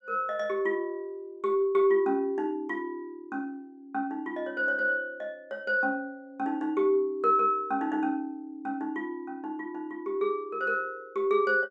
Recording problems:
none

